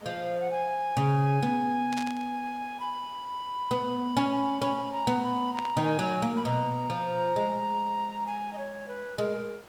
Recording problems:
hiss; SNR 23 dB
static burst; at 2 s and at 5.5 s; peak -4 dB vs average level

